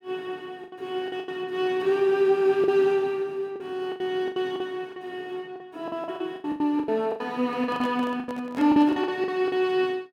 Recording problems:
lost packets; 14% of the sound replaced, filled with the last packet
microphone handling noise; from 7.5 to 9 s; peak -9 dB vs average level

